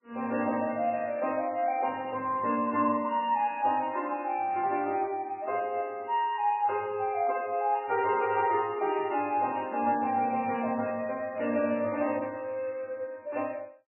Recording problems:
codec artefacts; MP3, log-spectral distance 3 dB, nothing above 2.4 kHz

